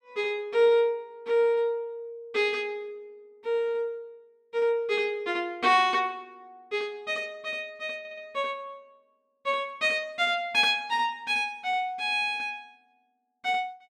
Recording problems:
stutter; at 8 s

